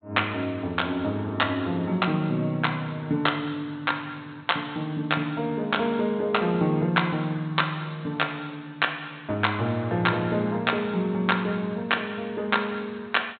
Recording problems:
low-pass filter; nothing above 4 kHz

